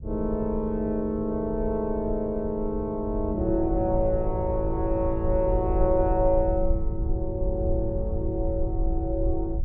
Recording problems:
low-frequency rumble; below 68 Hz, SNR 5 dB

